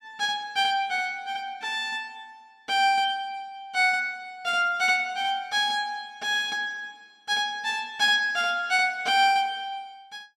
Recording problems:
none

